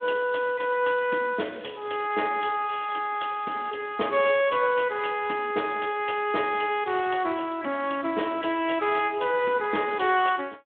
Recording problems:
telephone audio; 240 Hz to 3.6 kHz, Speex

